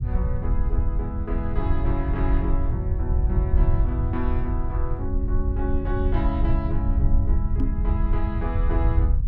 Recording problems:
low-frequency rumble; below 80 Hz, SNR -6 dB
microphone bump; at 7.5 s; peak +8 dB vs average level

